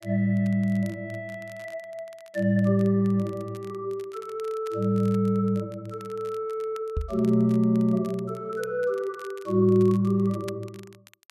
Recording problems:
crackle; vinyl, SNR 27 dB
knock on the microphone; at 7 s; peak 0 dB vs average level

